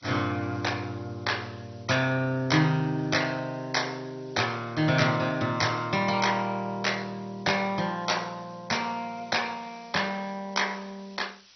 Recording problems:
lossy codec; MP2, log-spectral distance 9 dB, nothing above 6 kHz
hiss; slope +3 dB per octave, SNR 27 dB

